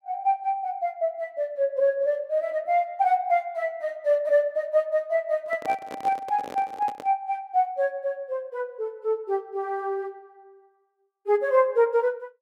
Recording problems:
handling noise; from 5.5 to 7 s; peak -7 dB vs average level

